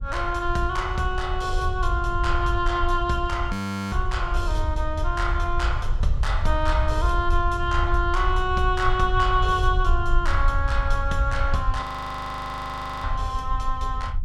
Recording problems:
low-frequency rumble; below 64 Hz, SNR 2 dB
audio freezing; at 3.5 s and at 12 s for 1 s

